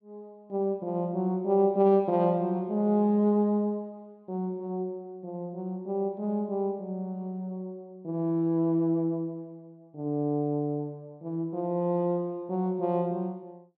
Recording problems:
none

